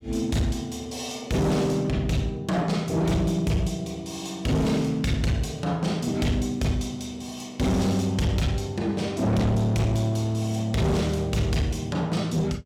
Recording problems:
distorted audio; hard clipping, signal-to-distortion ratio 8 dB

